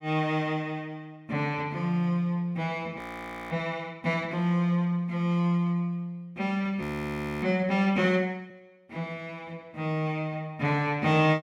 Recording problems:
frozen audio; at 3 s for 0.5 s and at 7 s for 0.5 s

